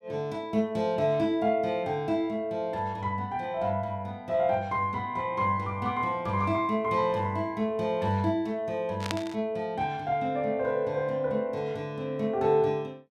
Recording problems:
static burst; at 9 s; peak +1 dB vs average level

